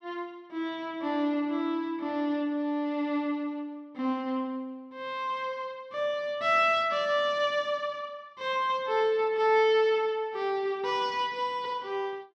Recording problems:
none

